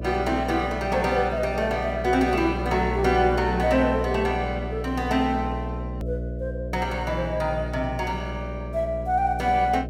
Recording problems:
hum; 60 Hz, harmonics up to 660 Hz, SNR 7 dB
click at an edit; at 6 s

